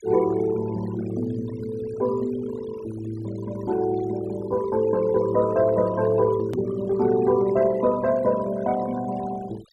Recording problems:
denoising artefacts; signal-to-artefact ratio 17 dB
hard cut with a click; at 6.5 s

